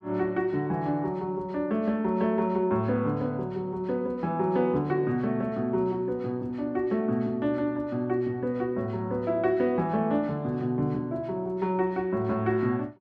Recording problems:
none

